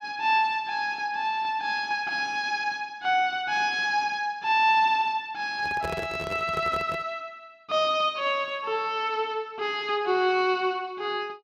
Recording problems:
microphone handling noise; from 5.5 to 7 s; peak -4 dB vs average level

